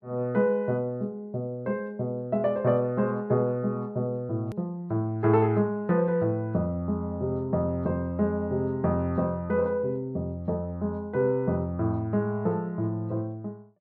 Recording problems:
edit click; at 4.5 s

